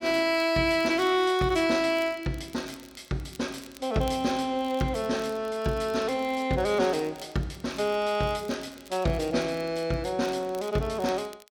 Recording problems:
crackle; vinyl, SNR 24 dB

